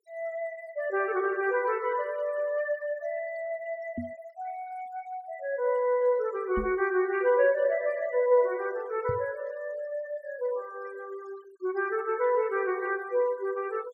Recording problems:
noise reduction artefacts; signal-to-artefact ratio 23 dB
microphone bump; at 4 s, at 6.5 s and at 9 s; peak -2 dB vs average level

